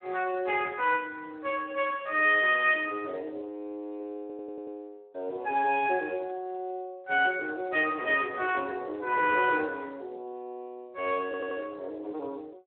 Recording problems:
telephone audio; 320 Hz to 3.3 kHz, Speex
audio stuttering; at 4 s and at 11 s

